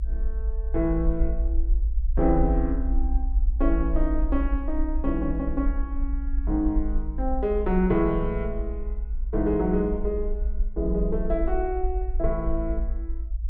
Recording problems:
low-frequency rumble; below 54 Hz, SNR 2 dB

